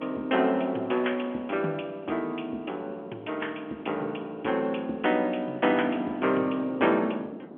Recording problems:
phone line; 190 Hz to 3.4 kHz, G.711
wind on the microphone; below 490 Hz, SNR 16 dB

